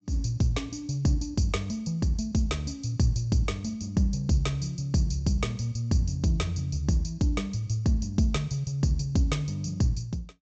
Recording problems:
treble missing; nothing above 8 kHz

